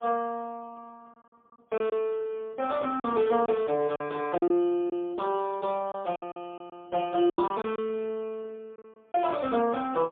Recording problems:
telephone audio; 190 Hz to 2.9 kHz, AMR-NB, then MP3
lost packets; 7% of the sound replaced, filled with silence

